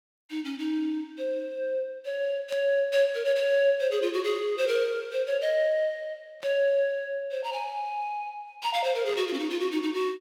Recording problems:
static burst; at 2.5 s, at 6.5 s and at 9 s; peak -11 dB vs average level

